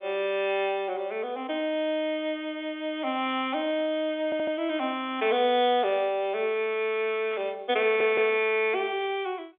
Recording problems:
phone line; 220 Hz to 3.6 kHz, G.711
stutter; at 4.5 s and at 8 s
static burst; at 5 s and at 7.5 s; peak -12 dB vs average level

